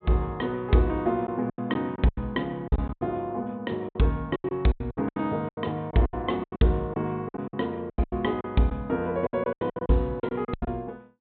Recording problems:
low-pass filter; nothing above 4 kHz
lost packets; 16% of the sound replaced, filled with silence

